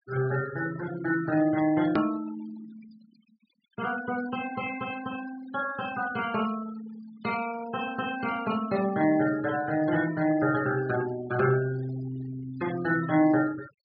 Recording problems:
treble missing; nothing above 5.2 kHz
denoising artefacts; signal-to-artefact ratio 15 dB
edit click; at 2 s

